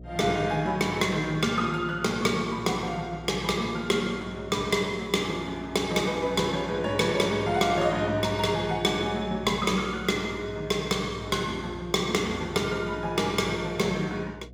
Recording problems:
hum; 60 Hz, harmonics up to 660 Hz, SNR 18 dB

